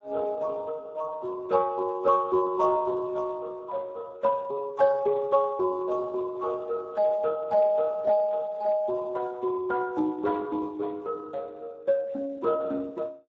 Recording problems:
lossy codec; Speex, log-spectral distance 3 dB

